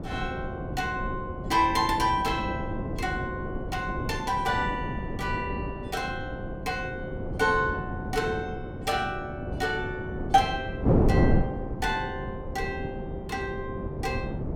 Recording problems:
wind on the microphone; below 360 Hz, SNR 3 dB

